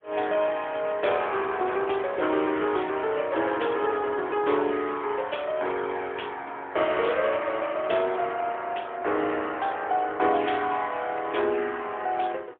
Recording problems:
telephone audio; 280 Hz to 3.4 kHz, AMR-NB, then MP3

